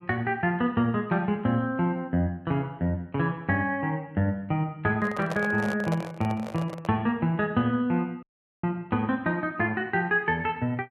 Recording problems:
handling noise; from 5 to 7 s; peak -1 dB vs average level
dropout; at 8 s

